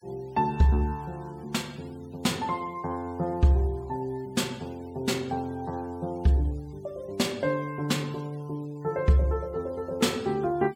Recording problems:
denoising artefacts; signal-to-artefact ratio 26 dB

